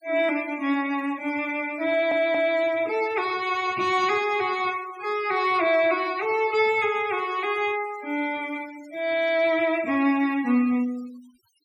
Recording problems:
denoising artefacts; signal-to-artefact ratio 20 dB
stutter; at 2 s

